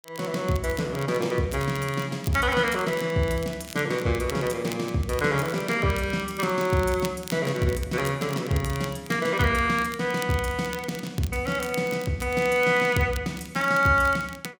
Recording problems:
crackle; vinyl, SNR 17 dB

